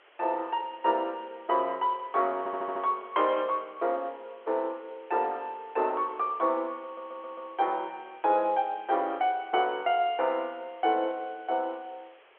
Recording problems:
phone line; 320 Hz to 3.3 kHz, G.711
hiss; SNR 27 dB
audio stuttering; at 2.5 s and at 7 s

